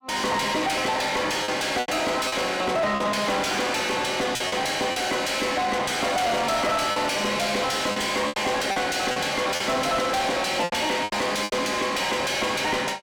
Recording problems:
distorted audio; soft clipping, signal-to-distortion ratio 7 dB
lost packets; 7% of the sound replaced, filled with repeated pitch periods

